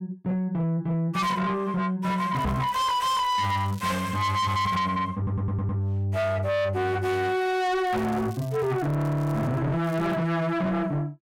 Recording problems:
distorted audio; soft clipping, signal-to-distortion ratio 7 dB
crackling; from 2.5 to 5 s, from 8 to 9.5 s and at 10 s; loose cable, SNR 23 dB
microphone thump; at 2.5 s; peak +3 dB vs average level
audio stuttering; at 5 s

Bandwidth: 16.5 kHz